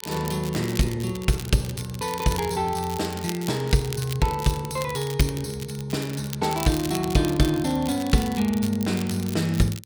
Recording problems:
crackle; vinyl, SNR 13 dB

